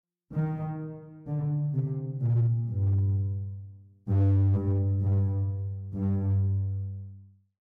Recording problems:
distorted audio; hard clipping, signal-to-distortion ratio 12 dB

